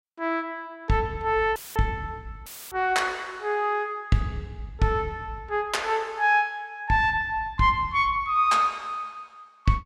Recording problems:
audio cutting out; at 1.5 s and at 2.5 s; filled with static

